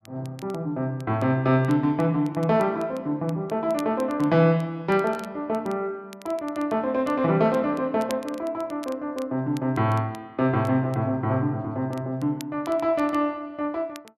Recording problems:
crackling; vinyl, SNR 24 dB

